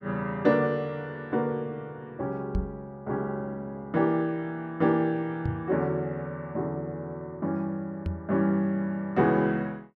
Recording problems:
knock on the microphone; at 2.5 s, at 5.5 s and at 8 s; peak +3 dB vs average level

